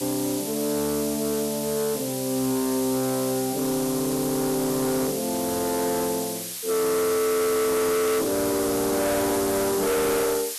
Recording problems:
distorted audio; soft clipping, signal-to-distortion ratio 7 dB
background hiss; slope +4 dB per octave, SNR 6 dB
burst of static; at 8 s; peak -14 dB vs average level

